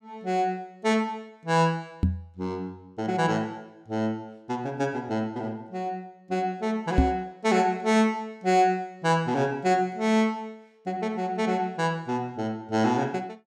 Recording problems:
microphone bump; at 2 s and at 7 s; peak +9 dB vs average level

